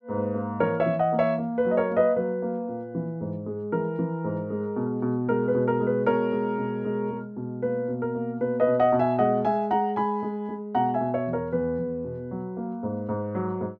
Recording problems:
none

